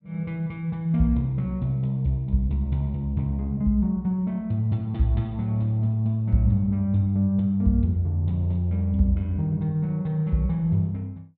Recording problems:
none

